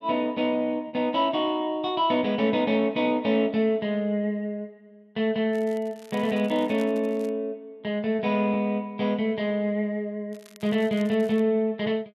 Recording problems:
packet loss; 1% of the sound replaced, filled with repeated pitch periods
crackling; from 5.5 to 7.5 s and from 10 to 11 s; loose cable, SNR 26 dB

